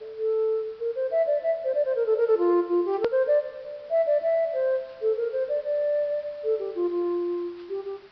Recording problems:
low-pass filter; nothing above 5.5 kHz
background hiss; SNR 29 dB
click at an edit; at 3 s

